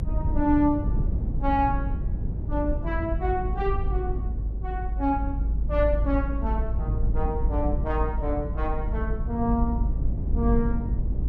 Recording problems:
low-frequency rumble; below 82 Hz, strongest tone 52 Hz, SNR 0 dB

